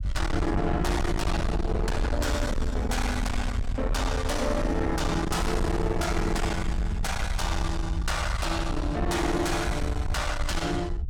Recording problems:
distortion; soft clipping, signal-to-distortion ratio 8 dB
rumble; below 110 Hz, SNR 2 dB

